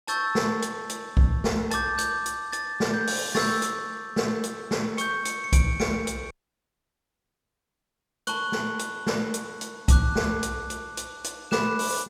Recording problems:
dropout; at 6.5 s for 2 s

